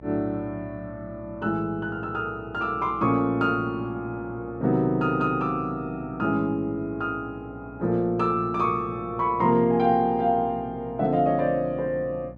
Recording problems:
hum; 60 Hz, harmonics up to 900 Hz, SNR 19 dB

